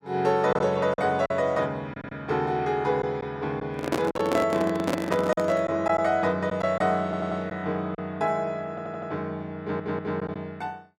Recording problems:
lost packets; 4% of the sound replaced, filled with silence
stutter; 4 times, first at 2 s
microphone handling noise; from 3.5 to 5.5 s; peak +4 dB vs average level

